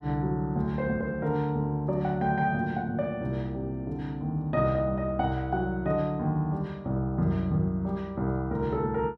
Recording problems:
none

